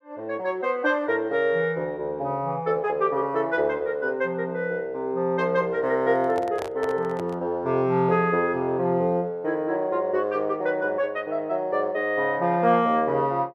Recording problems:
handling noise; from 6 to 7.5 s; peak -5 dB vs average level

